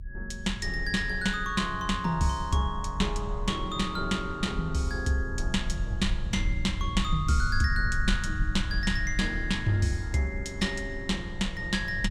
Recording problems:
low-frequency rumble; below 74 Hz, SNR 6 dB

